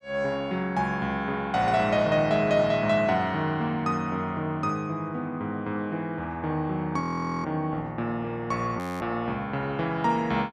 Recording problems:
audio freezing; at 7 s and at 9 s

